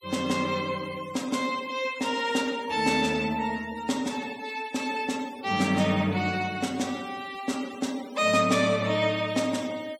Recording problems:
noise reduction artefacts; signal-to-artefact ratio 18 dB

